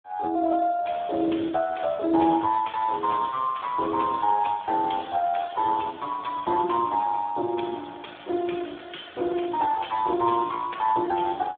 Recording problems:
phone line; 280 Hz to 3.6 kHz, Speex

